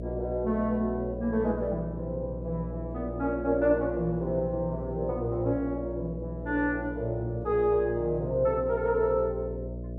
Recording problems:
electrical hum; 60 Hz, harmonics up to 660 Hz, SNR 9 dB

